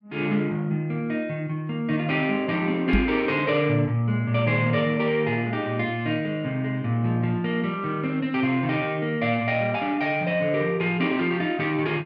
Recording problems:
microphone bump; at 3 s; peak +6 dB vs average level

